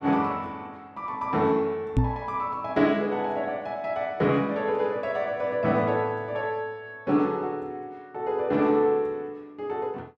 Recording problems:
microphone bump; at 2 s; peak +7 dB vs average level

